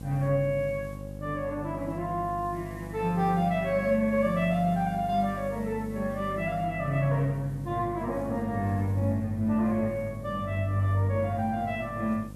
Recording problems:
hum; 50 Hz, harmonics up to 800 Hz, SNR 12 dB
hiss; slope -3 dB per octave, SNR 29 dB

